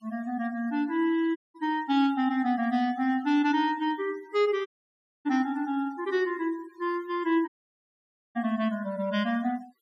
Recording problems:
denoising artefacts; signal-to-artefact ratio 24 dB
dropout; at 1.5 s, at 4.5 s for 0.5 s and at 7.5 s for 1 s

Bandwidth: 15 kHz